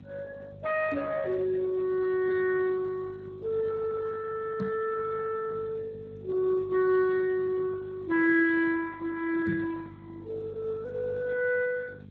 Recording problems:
lossy compression; Speex, log-spectral distance 3 dB
hum; 50 Hz, harmonics up to 450 Hz, SNR 18 dB
knock on the microphone; at 1 s, at 4.5 s and at 9.5 s; peak +2 dB vs average level

